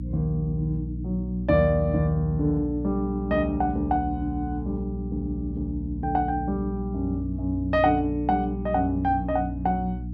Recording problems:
hum; 60 Hz, harmonics up to 300 Hz, SNR 7 dB

